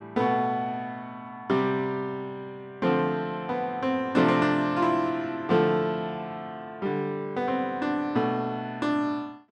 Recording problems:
none

